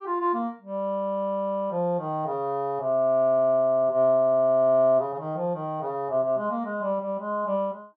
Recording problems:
none

